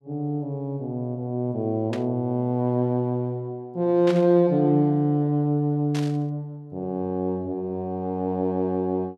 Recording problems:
static burst; at 2 s, at 4 s and at 6 s; peak -6 dB vs average level

